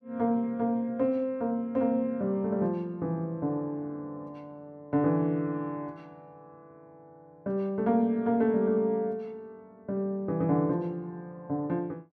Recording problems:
none

